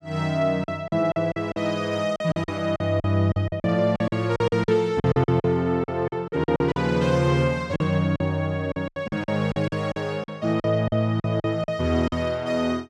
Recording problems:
lost packets; 14% of the sound replaced, filled with silence

